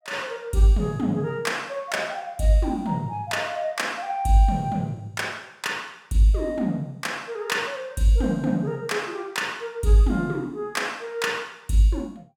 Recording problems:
none

